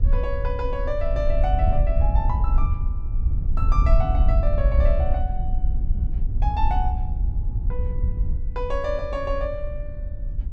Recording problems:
wind noise; below 64 Hz, SNR -5 dB

